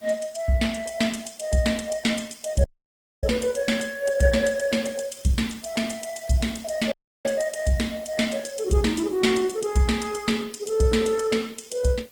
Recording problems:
lossy compression; Opus, log-spectral distance 5 dB
background hiss; slope -1 dB per octave, SNR 25 dB
audio cutting out; at 2.5 s for 0.5 s and at 7 s

